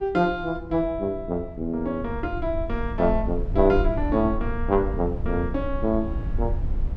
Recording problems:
low-frequency rumble; below 80 Hz, SNR 6 dB

